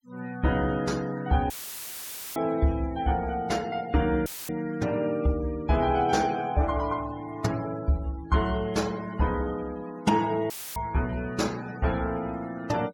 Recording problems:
noise reduction artefacts; signal-to-artefact ratio 20 dB
audio cutting out; at 1.5 s for 1 s, at 4.5 s and at 11 s; filled with static

